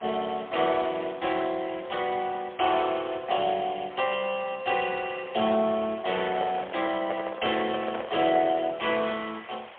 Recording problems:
telephone audio; 260 Hz to 3.3 kHz, AMR-NB, then MP3
background hiss; SNR 19 dB
handling noise; from 6 to 8.5 s; peak -1 dB vs average level

